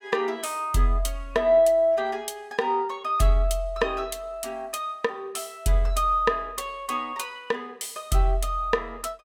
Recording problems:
none

